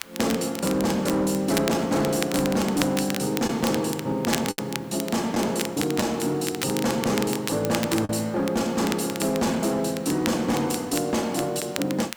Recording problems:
distorted audio; hard clipping, signal-to-distortion ratio 11 dB
hiss; SNR 24 dB
crackle; vinyl, SNR 10 dB
packet loss; 1.6% of the sound replaced, filled with the last packet

